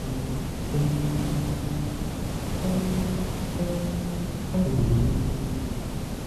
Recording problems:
hiss; slope -5 dB per octave, SNR 2 dB
wind noise; below 200 Hz, SNR 6 dB

